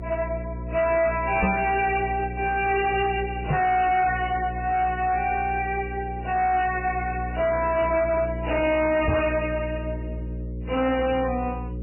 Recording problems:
codec artefacts; MP3, then AAC, log-spectral distance 4 dB, nothing above 2.7 kHz
distorted audio; hard clipping, signal-to-distortion ratio 10 dB
hum; 60 Hz, harmonics up to 540 Hz, SNR 10 dB
knock on the microphone; at 1.5 s, at 3.5 s and at 9 s; peak +4 dB vs average level

